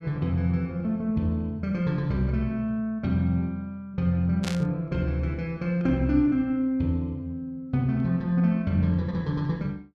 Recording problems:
static burst; at 4.5 s; peak -2 dB vs average level

